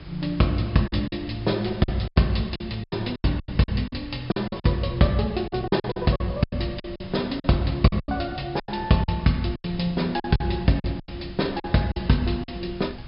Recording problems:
treble cut off; nothing above 5.5 kHz
background hiss; SNR 25 dB
wind noise; below 160 Hz, SNR 18 dB
packet loss; 13% of the sound replaced, filled with silence

